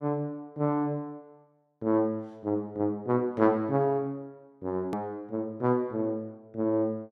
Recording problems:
click at an edit; at 5 s

